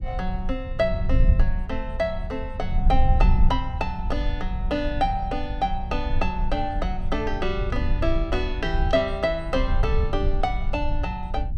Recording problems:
rumble; below 64 Hz, strongest tone 20 Hz, SNR 0 dB

